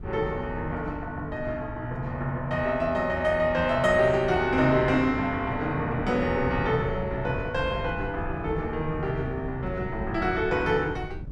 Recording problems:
wind on the microphone; below 150 Hz, SNR 12 dB

